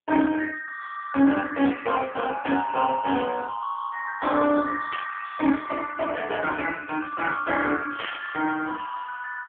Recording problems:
phone line; 170 Hz to 3.1 kHz, AMR-NB
burst of static; at 2.5 s, at 5 s and at 8 s; peak -3 dB vs average level

